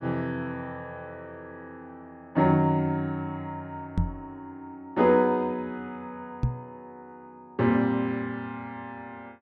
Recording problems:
knock on the microphone; at 4 s and at 6.5 s; peak +5 dB vs average level

